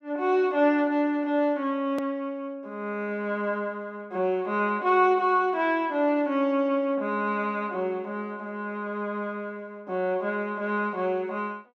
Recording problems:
click at an edit; at 2 s

